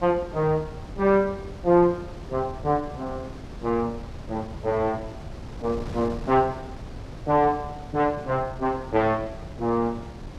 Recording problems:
wind noise; below 340 Hz, SNR 14 dB

